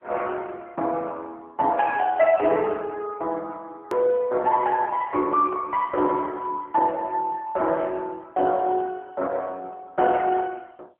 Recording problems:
phone line; 320 Hz to 2.6 kHz, AMR-NB
edit click; at 4 s

